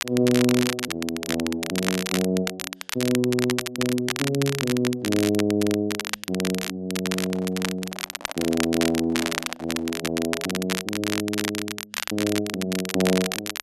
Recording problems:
crackling; vinyl, SNR 4 dB
handling noise; from 7 to 10 s; peak -10 dB vs average level

